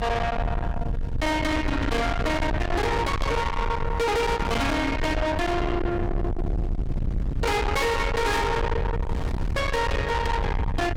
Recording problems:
distorted audio; soft clipping, signal-to-distortion ratio 6 dB
low-frequency rumble; below 700 Hz, SNR 3 dB
wind on the microphone; below 860 Hz, SNR 10 dB

